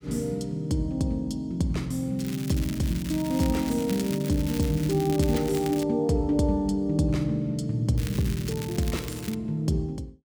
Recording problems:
crackle; from 2 to 6 s and from 8 to 9.5 s; loose cable, SNR 13 dB

